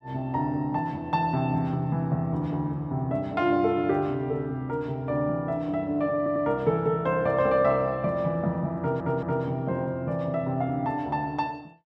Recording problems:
audio stuttering; at 6 s and at 9 s

